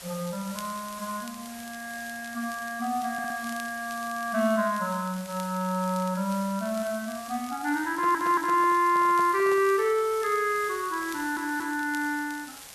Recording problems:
hiss; SNR 16 dB
crackle; vinyl, SNR 22 dB
stutter; at 3 s, at 8 s and at 11 s
microphone handling noise; from 8 to 9.5 s; peak -9 dB vs average level

